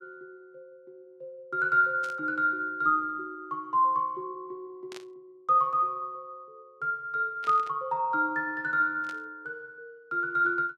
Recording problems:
static burst; 4 times, first at 2 s; peak -12 dB vs average level

